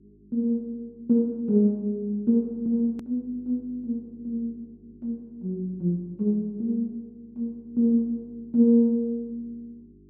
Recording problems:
hum; 50 Hz, harmonics up to 400 Hz, SNR 28 dB
edit click; at 3 s

